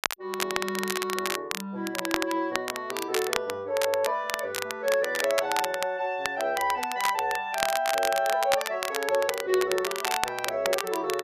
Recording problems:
crackling; vinyl, SNR 4 dB

